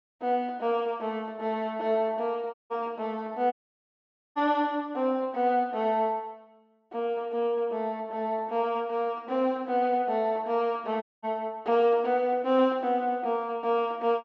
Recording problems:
low-pass filter; nothing above 8 kHz
dropout; at 2.5 s, at 3.5 s for 1 s and at 11 s

